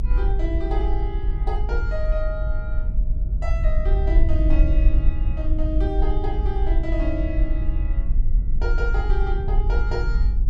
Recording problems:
low-frequency rumble; below 50 Hz, SNR -8 dB

